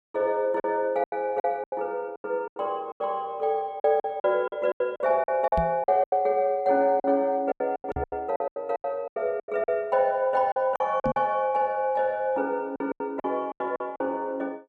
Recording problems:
packet loss; 15% of the sound replaced, filled with silence
microphone thump; at 5.5 s, at 8 s and at 11 s; peak -1 dB vs average level

